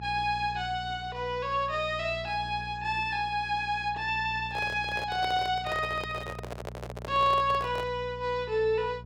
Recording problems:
hum; 60 Hz, harmonics up to 660 Hz, SNR 15 dB
handling noise; from 4.5 to 8 s; peak -5 dB vs average level

